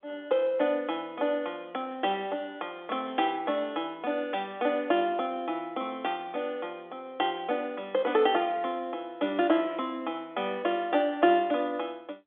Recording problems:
phone line; 240 Hz to 3.5 kHz, G.711

